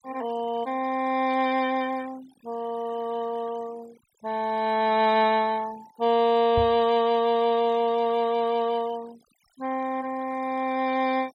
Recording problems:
denoising artefacts; signal-to-artefact ratio 22 dB
microphone bump; at 6.5 s; peak -2 dB vs average level

